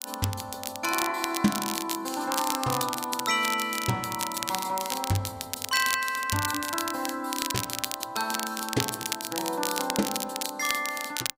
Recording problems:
crackle; vinyl, SNR 3 dB

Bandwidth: 15.5 kHz